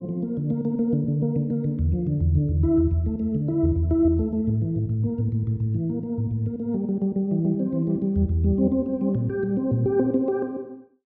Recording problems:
none

